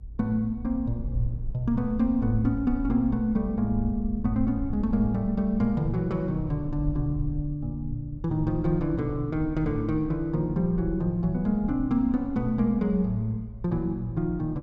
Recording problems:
rumble; below 66 Hz, SNR 11 dB

